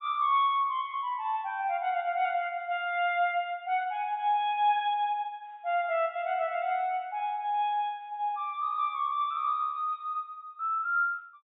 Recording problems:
low-pass filter; nothing above 4 kHz

